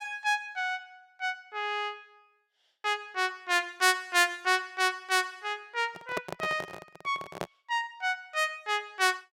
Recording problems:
handling noise; from 6 to 7.5 s; peak 0 dB vs average level

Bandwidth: 16.5 kHz